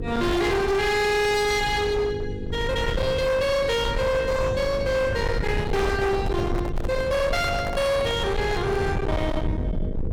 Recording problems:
distortion; hard clipping, signal-to-distortion ratio 7 dB
hum; 50 Hz, harmonics up to 750 Hz, SNR 13 dB
low-frequency rumble; below 200 Hz, SNR 7 dB
microphone handling noise; from 5.5 to 9 s; peak -6 dB vs average level

